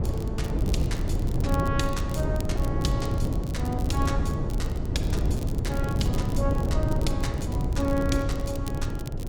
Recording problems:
wind noise; below 170 Hz, SNR -5 dB
crackle; vinyl, SNR 14 dB

